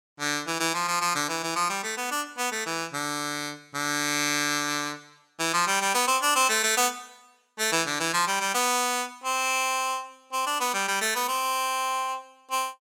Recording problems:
none

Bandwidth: 17 kHz